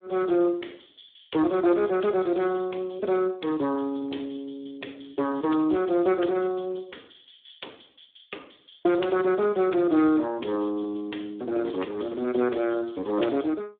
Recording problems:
phone line; 260 Hz to 3.6 kHz, Speex

